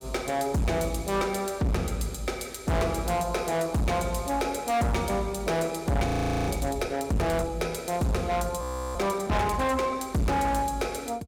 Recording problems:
distorted audio; hard clipping, signal-to-distortion ratio 7 dB
frozen audio; at 6 s and at 8.5 s

